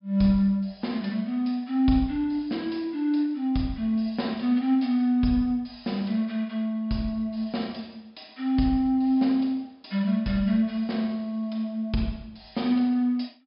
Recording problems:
treble missing; nothing above 5.5 kHz

